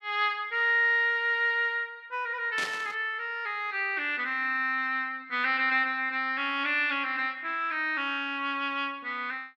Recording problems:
burst of static; at 2.5 s; peak -3 dB vs average level

